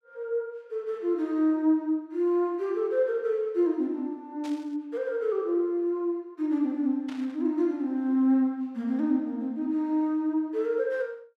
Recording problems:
static burst; at 4.5 s and at 7 s; peak -13 dB vs average level

